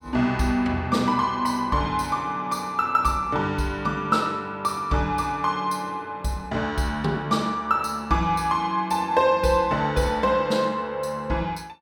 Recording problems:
none

